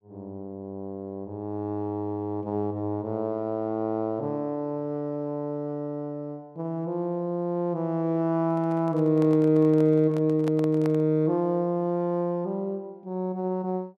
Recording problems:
handling noise; from 8.5 to 11 s; peak -6 dB vs average level

